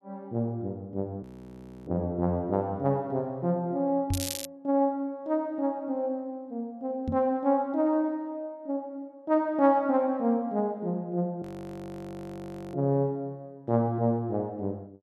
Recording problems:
audio freezing; at 1 s for 0.5 s and at 11 s for 1.5 s
microphone thump; at 4 s and at 7 s; peak +2 dB vs average level
crackle; at 4 s; loose cable, SNR 6 dB

